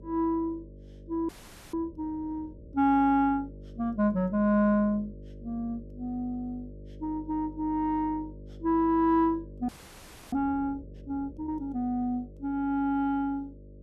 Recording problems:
electrical hum; 50 Hz, harmonics up to 600 Hz, SNR 18 dB
frozen audio; at 1.5 s and at 9.5 s for 0.5 s

